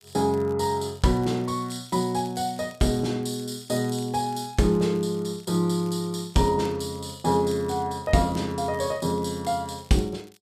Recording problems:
crackle; vinyl, SNR 27 dB

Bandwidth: 14.5 kHz